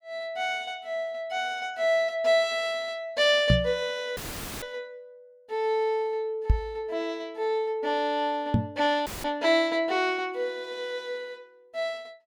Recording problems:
microphone thump; at 3.5 s, at 6.5 s and at 8.5 s; peak +9 dB vs average level
audio cutting out; at 4 s and at 9 s; filled with static

